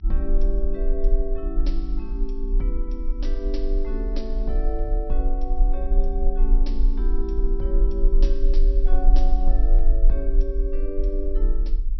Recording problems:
treble missing; nothing above 5.8 kHz
mains hum; 50 Hz, harmonics up to 400 Hz, SNR 18 dB
low-frequency rumble; below 38 Hz, strongest tone 24 Hz, SNR -8 dB

